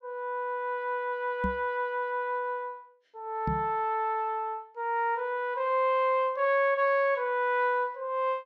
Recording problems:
knock on the microphone; at 1.5 s and at 3.5 s; peak 0 dB vs average level

